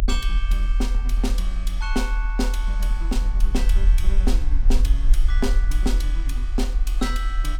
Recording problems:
rumble; below 42 Hz, strongest tone 40 Hz, SNR -7 dB

